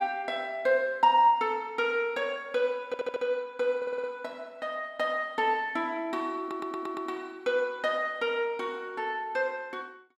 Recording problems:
audio stuttering; at 3 s, at 4 s and at 6.5 s

